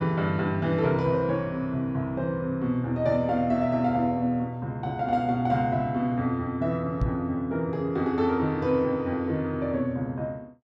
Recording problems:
microphone thump; at 7 s; peak +4 dB vs average level

